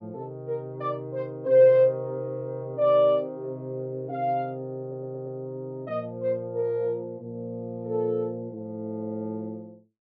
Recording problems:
stutter; at 5 s

